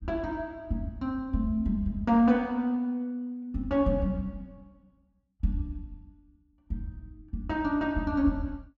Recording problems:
none

